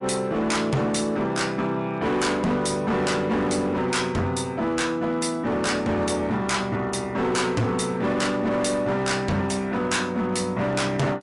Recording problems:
lossy codec; MP3, log-spectral distance 3 dB, nothing above 11 kHz
distortion; hard clipping, signal-to-distortion ratio 8 dB

